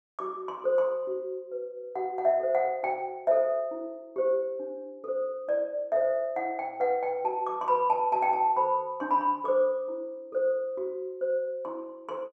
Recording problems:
none

